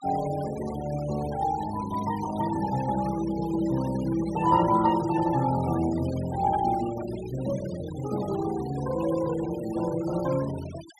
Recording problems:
noise reduction artefacts; signal-to-artefact ratio 16 dB

